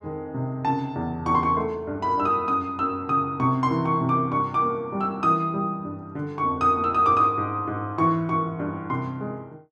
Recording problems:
none

